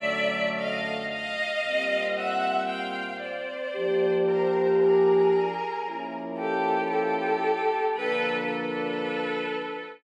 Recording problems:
none

